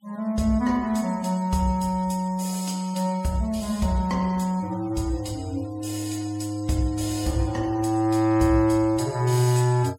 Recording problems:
denoising artefacts; signal-to-artefact ratio 23 dB

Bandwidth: 16 kHz